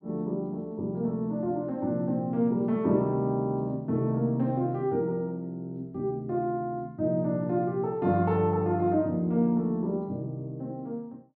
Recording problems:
none

